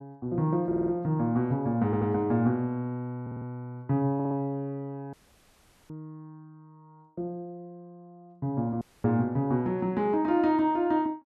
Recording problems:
audio stuttering; 4 times, first at 0.5 s
dropout; at 5 s for 1 s and at 9 s

